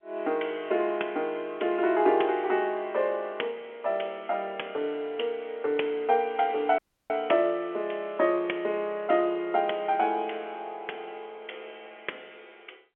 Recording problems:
telephone audio; 260 Hz to 3.3 kHz, G.711
audio cutting out; at 7 s

